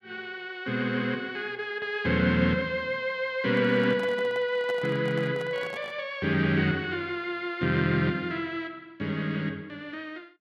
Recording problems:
microphone handling noise; from 3.5 to 6 s; peak -8 dB vs average level

